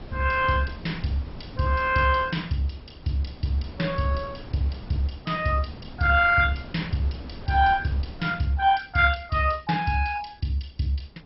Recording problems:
lossy codec; MP2, log-spectral distance 4 dB, nothing above 5.5 kHz
wind noise; below 370 Hz, SNR 17 dB

